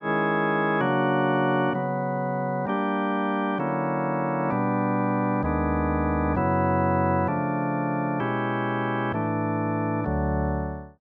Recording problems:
none

